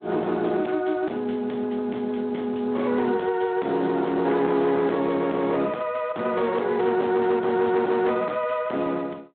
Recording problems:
phone line; 190 Hz to 3.7 kHz, Speex
distortion; hard clipping, signal-to-distortion ratio 11 dB

